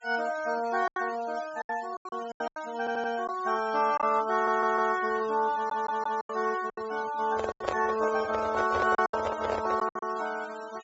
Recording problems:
treble missing; nothing above 8 kHz
noise reduction artefacts; signal-to-artefact ratio 19 dB
lost packets; 9% of the sound replaced, filled with silence
audio stuttering; at 3 s, at 4.5 s and at 5.5 s
handling noise; from 7.5 to 10 s; peak +3 dB vs average level

